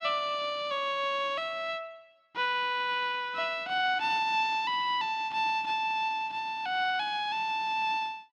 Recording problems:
none

